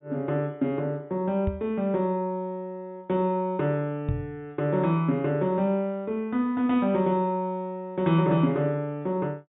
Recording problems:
treble cut off; nothing above 4 kHz
microphone thump; at 1.5 s and at 4 s; peak +1 dB vs average level

